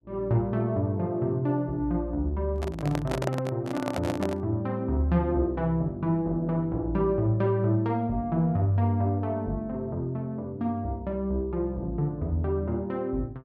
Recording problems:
microphone handling noise; from 2.5 to 4.5 s; peak +2 dB vs average level

